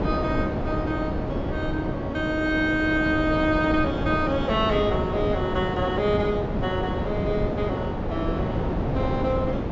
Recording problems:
treble missing; nothing above 7.4 kHz
wind on the microphone; below 500 Hz, SNR 2 dB

